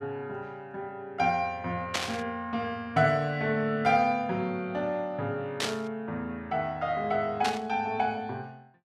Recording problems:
static burst; at 2 s, at 5.5 s and at 7.5 s; peak +5 dB vs average level

